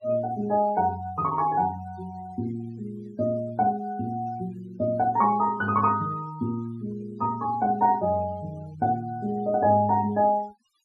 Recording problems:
denoising artefacts; signal-to-artefact ratio 25 dB

